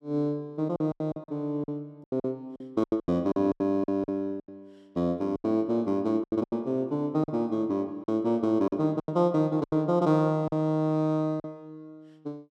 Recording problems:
packet loss; 12% of the sound replaced, filled with silence

